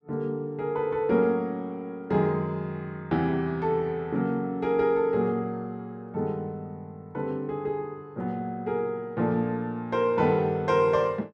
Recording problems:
none

